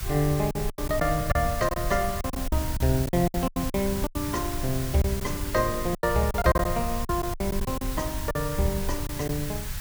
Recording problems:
background hiss; SNR 9 dB
low-frequency rumble; below 96 Hz, SNR 8 dB
packet loss; 12% of the sound replaced, filled with silence

